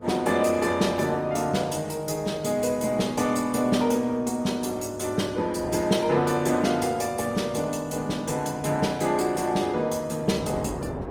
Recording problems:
lossy compression; Opus, log-spectral distance 4 dB, nothing above 19 kHz
wind noise; below 590 Hz, SNR 17 dB

